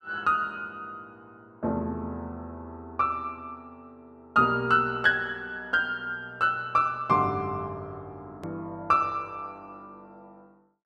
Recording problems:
edit click; at 8.5 s

